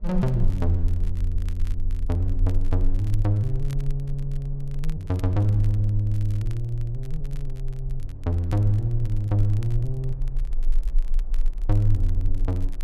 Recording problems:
low-frequency rumble; below 32 Hz, strongest tone 20 Hz, SNR 6 dB
wind noise; below 240 Hz, SNR 25 dB
crackling; vinyl, SNR 27 dB

